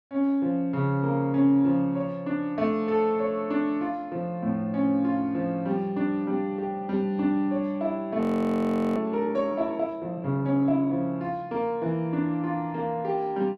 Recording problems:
audio freezing; at 8 s for 1 s

